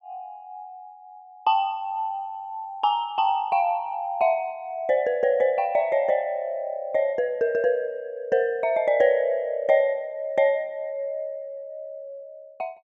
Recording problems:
none

